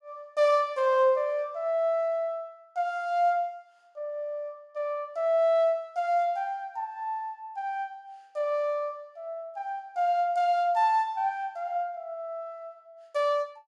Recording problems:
none

